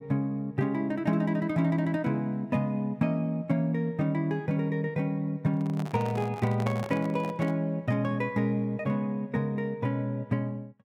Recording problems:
handling noise; from 5.5 to 7.5 s; peak -3 dB vs average level

